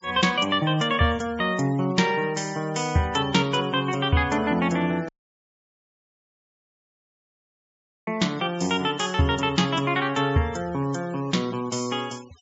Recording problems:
low-pass filter; nothing above 8 kHz
denoising artefacts; signal-to-artefact ratio 22 dB
audio cutting out; at 5 s for 3 s

